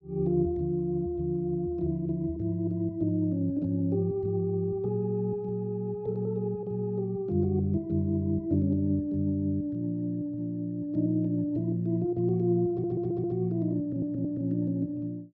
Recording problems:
stutter; at 13 s and at 14 s

